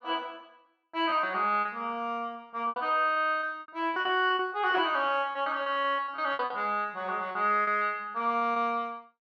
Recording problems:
packet loss; 13% of the sound replaced, filled with repeated pitch periods

